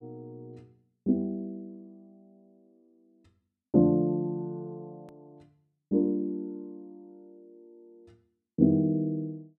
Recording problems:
edit click; at 5 s

